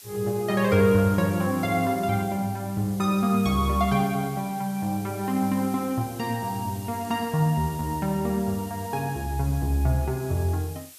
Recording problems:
hiss; SNR 18 dB

